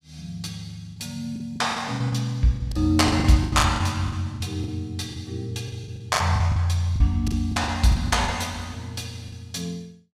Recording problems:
packet loss; 13% of the sound replaced, filled with the last packet

